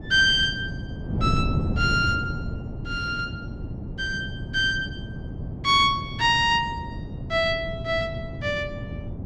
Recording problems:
wind on the microphone; below 220 Hz, SNR 8 dB

